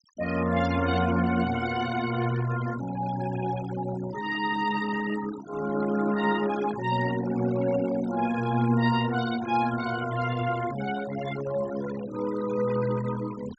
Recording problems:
treble cut off; nothing above 8 kHz
denoising artefacts; signal-to-artefact ratio 14 dB

